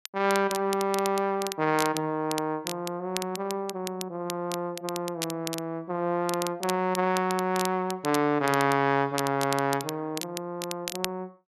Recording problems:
crackling; vinyl, SNR 10 dB

